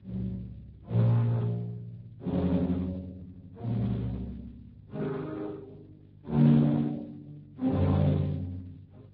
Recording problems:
lossy codec; Speex, then Vorbis, log-spectral distance 2 dB, nothing above 11.3 kHz
hum; 50 Hz, harmonics up to 350 Hz, SNR 25 dB

